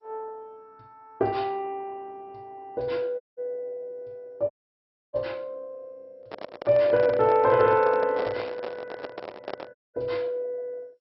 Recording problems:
lossy codec; MP2, log-spectral distance 2 dB, nothing above 5.3 kHz
dropout; at 3 s, at 4.5 s for 0.5 s and at 10 s
microphone handling noise; from 6 to 9.5 s; peak -4 dB vs average level

